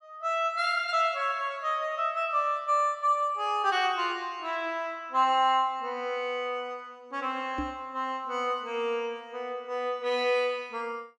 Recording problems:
microphone bump; at 7.5 s; peak -2 dB vs average level

